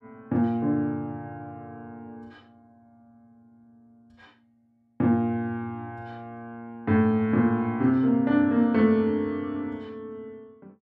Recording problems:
none

